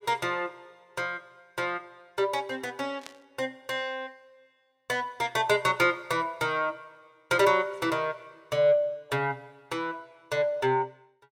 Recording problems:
static burst; at 3 s; peak -10 dB vs average level

